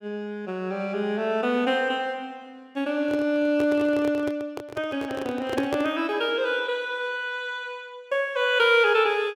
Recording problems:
handling noise; from 3 to 6 s; peak +1 dB vs average level

